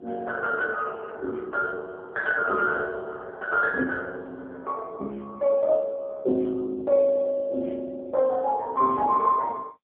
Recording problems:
telephone audio; 280 Hz to 2.1 kHz, AMR-NB

